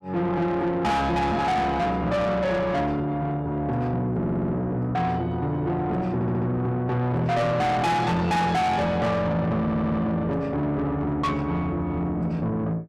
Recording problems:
distortion; soft clipping, signal-to-distortion ratio 7 dB
audio stuttering; at 4 s, at 6 s and at 9.5 s

